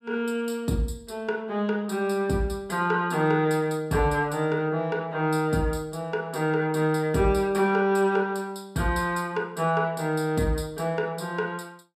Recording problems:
none

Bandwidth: 14.5 kHz